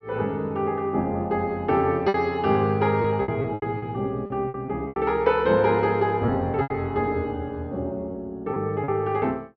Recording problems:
treble cut off; nothing above 5.9 kHz
packet loss; 7% of the sound replaced, filled with repeated pitch periods

